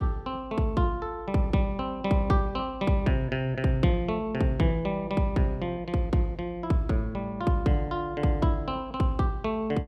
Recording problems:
none

